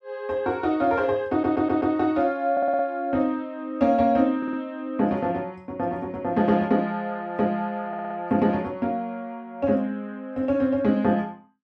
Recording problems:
audio stuttering; 4 times, first at 1.5 s

